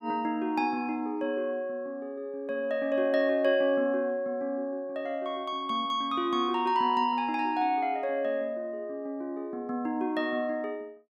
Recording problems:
none

